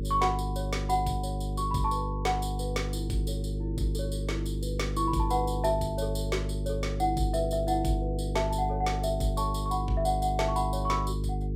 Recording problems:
hum; 50 Hz, harmonics up to 450 Hz, SNR 2 dB

